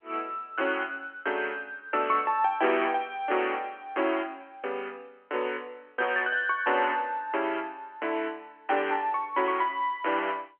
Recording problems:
telephone audio; 280 Hz to 3.2 kHz, G.711

